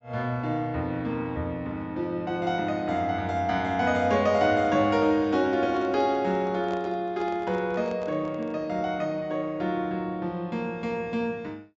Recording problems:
treble missing; nothing above 8 kHz
handling noise; from 5.5 to 8.5 s; peak -10 dB vs average level

